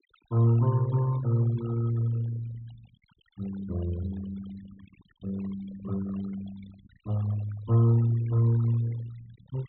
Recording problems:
low-pass filter; nothing above 4 kHz
noise reduction artefacts; signal-to-artefact ratio 20 dB

